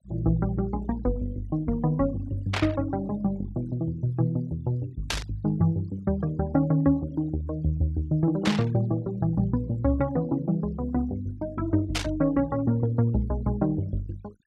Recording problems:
noise reduction artefacts; signal-to-artefact ratio 25 dB
burst of static; 4 times, first at 2.5 s; peak +3 dB vs average level

